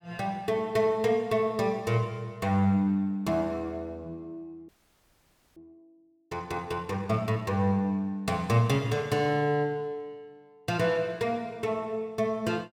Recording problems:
audio freezing; at 4.5 s for 1 s

